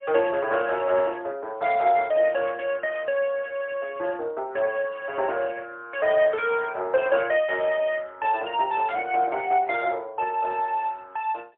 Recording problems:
phone line; 370 Hz to 3.5 kHz, AMR-NB, then MP3

